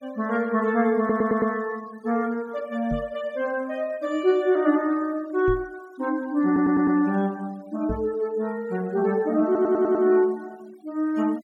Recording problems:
noise reduction artefacts; signal-to-artefact ratio 26 dB
audio stuttering; at 1 s, at 6.5 s and at 9.5 s
knock on the microphone; at 3 s, at 5.5 s and at 8 s; peak -3 dB vs average level

